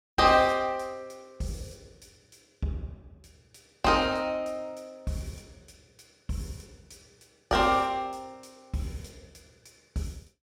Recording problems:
none

